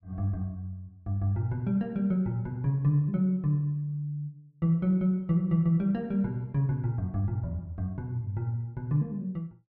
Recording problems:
none

